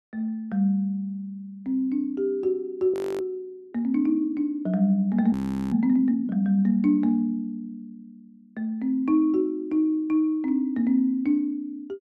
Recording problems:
frozen audio; at 3 s and at 5.5 s

